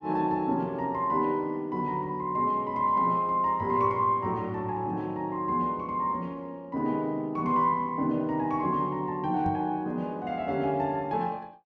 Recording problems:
microphone thump; at 9.5 s; peak -3 dB vs average level

